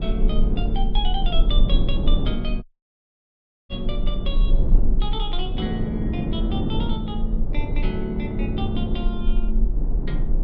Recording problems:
rumble; below 36 Hz, strongest tone 26 Hz, SNR -3 dB
wind on the microphone; below 260 Hz, SNR -1 dB
audio cutting out; at 2.5 s for 1 s

